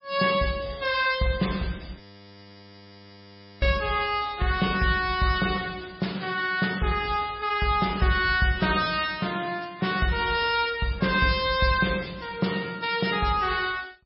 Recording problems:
lossy codec; MP3, log-spectral distance 6 dB, nothing above 4.8 kHz
audio freezing; at 2 s for 1.5 s

